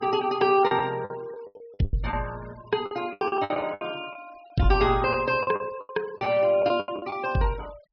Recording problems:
treble missing; nothing above 5.5 kHz
noise reduction artefacts; signal-to-artefact ratio 22 dB
lost packets; 14% of the sound replaced, filled with the last packet

